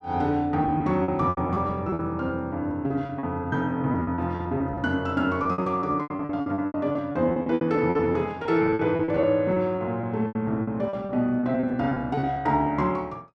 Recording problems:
packet loss; 18% of the sound replaced, filled with repeated pitch periods

